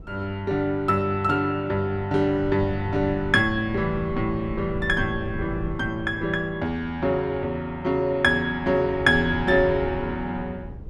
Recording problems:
wind on the microphone; below 150 Hz, SNR 14 dB

